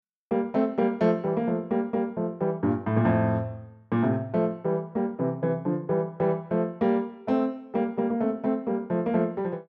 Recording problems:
none

